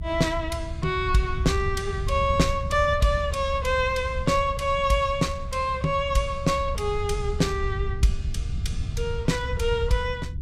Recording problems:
rumble; below 96 Hz, SNR 7 dB

